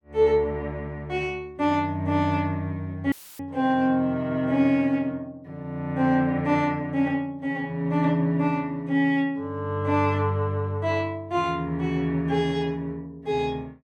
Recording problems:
dropout; at 3 s; filled with static

